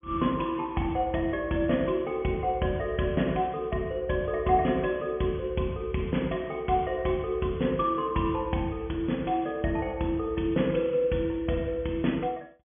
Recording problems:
treble cut off; nothing above 3.4 kHz

